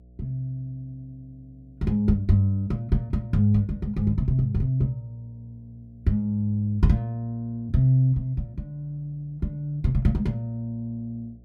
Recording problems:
hum; 60 Hz, harmonics up to 660 Hz, SNR 27 dB

